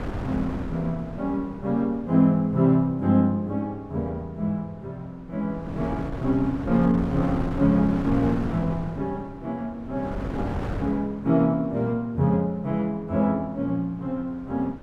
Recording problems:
wind on the microphone; below 440 Hz, SNR 9 dB

